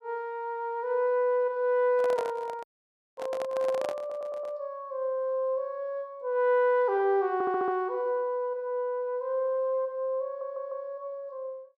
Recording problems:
handling noise; from 2 to 4.5 s; peak -4 dB vs average level
audio cutting out; at 2.5 s for 0.5 s
audio stuttering; at 4 s, at 7.5 s and at 10 s

